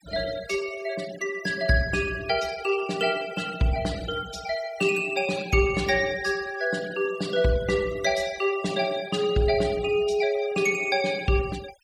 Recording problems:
denoising artefacts; signal-to-artefact ratio 16 dB

